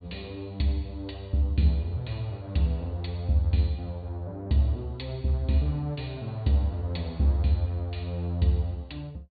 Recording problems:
treble cut off; nothing above 4.6 kHz

